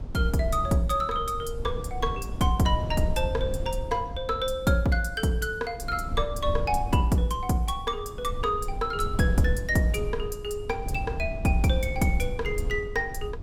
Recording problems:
rumble; below 86 Hz, SNR 8 dB

